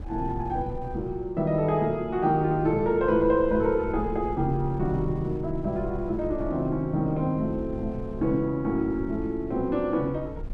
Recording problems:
wind on the microphone; below 86 Hz, SNR 14 dB

